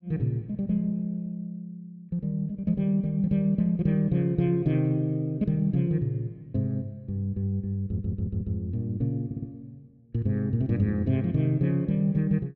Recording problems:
audio stuttering; at 8 s and at 9.5 s

